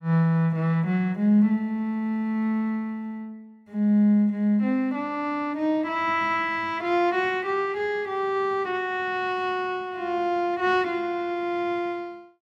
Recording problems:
none

